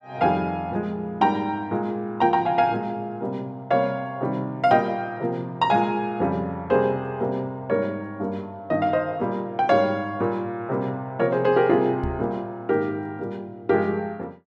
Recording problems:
knock on the microphone; at 12 s; peak -3 dB vs average level

